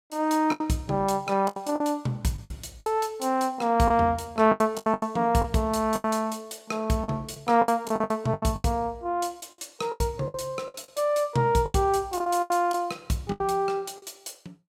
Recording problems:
packet loss; 12% of the sound replaced, filled with the last packet

